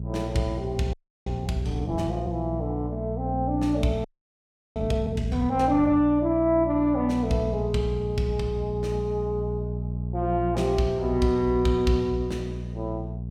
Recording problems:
hum; 60 Hz, harmonics up to 420 Hz, SNR 6 dB
frozen audio; at 1 s and at 4 s for 0.5 s

